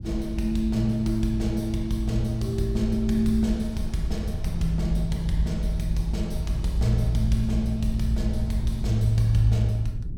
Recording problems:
rumble; below 98 Hz, SNR 9 dB

